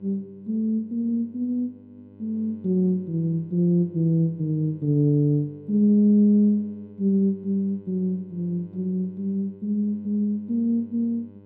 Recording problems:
electrical hum; 50 Hz, harmonics up to 1 kHz, SNR 24 dB

